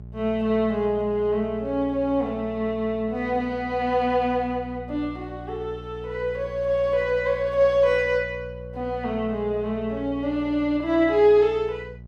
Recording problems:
electrical hum; 60 Hz, harmonics up to 600 Hz, SNR 17 dB

